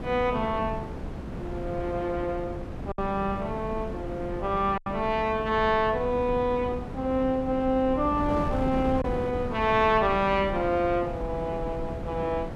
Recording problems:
wind on the microphone; below 330 Hz, SNR 9 dB
lost packets; 1.3% of the sound replaced, filled with silence

